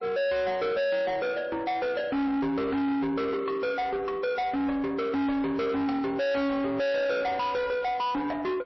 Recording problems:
lossy compression; MP3, log-spectral distance 2 dB, nothing above 5.7 kHz
distortion; soft clipping, signal-to-distortion ratio 6 dB

